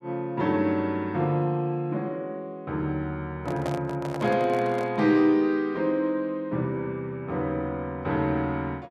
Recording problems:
microphone handling noise; from 3.5 to 5 s; peak -3 dB vs average level

